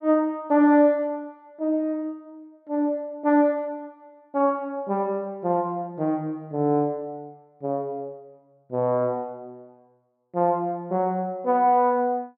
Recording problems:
none

